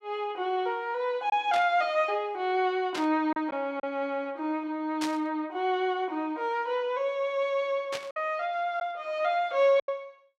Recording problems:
lost packets; 2% of the sound replaced, filled with silence
burst of static; 4 times, first at 1.5 s; peak -2 dB vs average level

